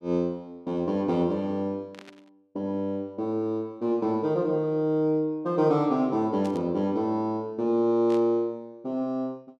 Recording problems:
static burst; at 2 s, at 6.5 s and at 8 s; peak -14 dB vs average level

